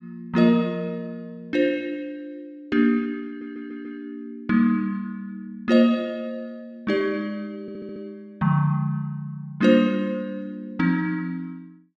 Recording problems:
stutter; at 3.5 s and at 7.5 s

